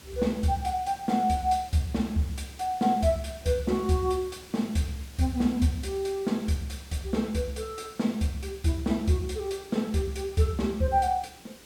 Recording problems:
hiss; SNR 20 dB

